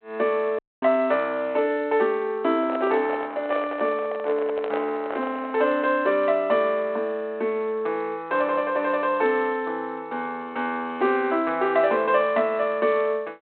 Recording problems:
phone line; 260 Hz to 3.6 kHz, G.726
dropout; at 0.5 s
microphone handling noise; from 2.5 to 5.5 s; peak -3 dB vs average level

